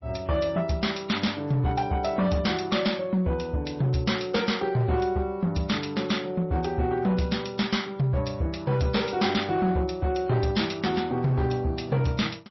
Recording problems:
lossy codec; MP3, log-spectral distance 4 dB, nothing above 5.7 kHz
distortion; hard clipping, signal-to-distortion ratio 11 dB

